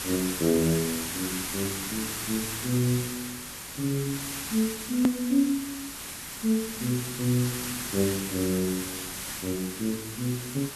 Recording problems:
hum; 50 Hz, harmonics up to 600 Hz, SNR 30 dB
background hiss; slope 0 dB per octave, SNR 4 dB
edit click; at 5 s

